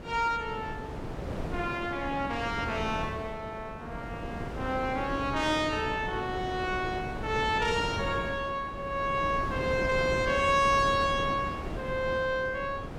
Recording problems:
wind noise; below 570 Hz, SNR 8 dB

